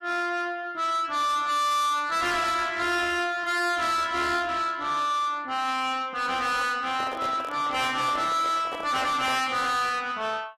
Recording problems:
codec artefacts; AAC, log-spectral distance 3 dB, nothing above 13.3 kHz
distorted audio; soft clipping, signal-to-distortion ratio 7 dB
microphone handling noise; from 7 to 9.5 s; peak -5 dB vs average level

